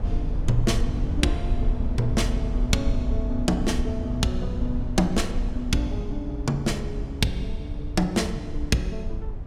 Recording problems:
rumble; below 76 Hz, SNR 3 dB

